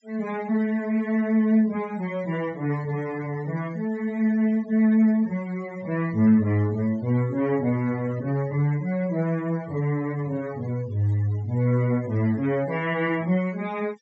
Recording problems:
treble cut off; nothing above 7.7 kHz
denoising artefacts; signal-to-artefact ratio 23 dB

